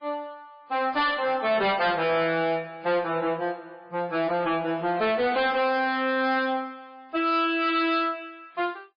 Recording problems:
codec artefacts; MP3, log-spectral distance 2 dB, nothing above 4.2 kHz
distortion; hard clipping, signal-to-distortion ratio 12 dB

